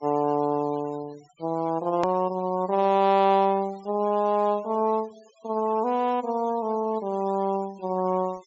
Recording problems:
treble missing; nothing above 8 kHz
denoising artefacts; signal-to-artefact ratio 26 dB
hard cut with a click; at 2 s

